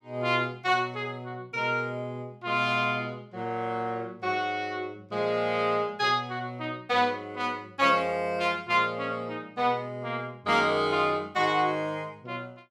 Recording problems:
none

